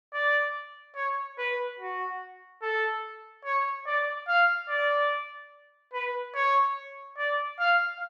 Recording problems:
none

